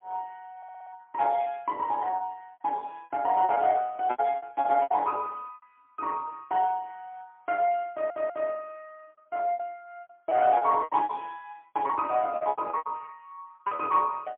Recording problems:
telephone audio; 220 Hz to 3.8 kHz, AMR-NB, then MP3
packet loss; 13% of the sound replaced, filled with repeated pitch periods
stutter; at 0.5 s and at 8 s

